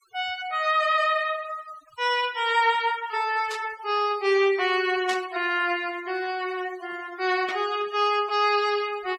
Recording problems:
noise reduction artefacts; signal-to-artefact ratio 19 dB
burst of static; at 3.5 s, at 5 s and at 7.5 s; peak -5 dB vs average level

